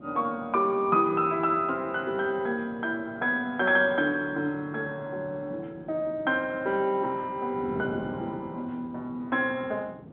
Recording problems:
phone line; 190 Hz to 3.4 kHz, G.711
wind noise; below 390 Hz, SNR 16 dB

